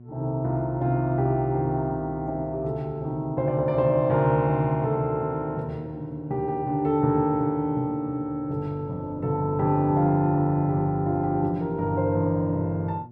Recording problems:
hum; 60 Hz, harmonics up to 720 Hz, SNR 22 dB

